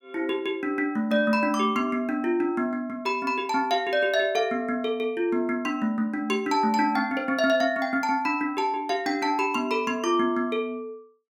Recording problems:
none

